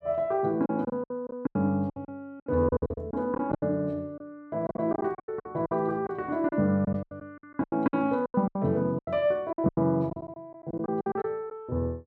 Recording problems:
packet loss; 17% of the sound replaced, filled with silence

